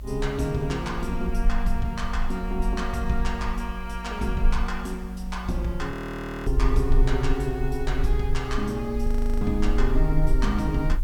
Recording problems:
hum; 60 Hz, harmonics up to 1.5 kHz, SNR 25 dB
hiss; slope -2 dB per octave, SNR 27 dB
rumble; below 46 Hz, strongest tone 26 Hz, SNR 2 dB
frozen audio; at 6 s for 0.5 s and at 9 s

